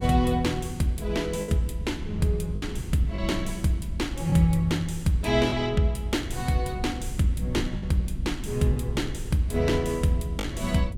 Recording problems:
low-frequency rumble; below 120 Hz, SNR 11 dB
lost packets; 3% of the sound replaced, filled with the last packet

